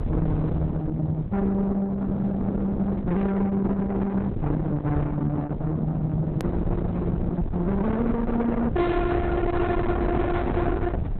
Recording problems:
lossy codec; Opus, log-spectral distance 2 dB, nothing above 13.1 kHz
distorted audio; soft clipping, signal-to-distortion ratio 8 dB
rumble; below 240 Hz, SNR 5 dB
hard cut with a click; at 6.5 s

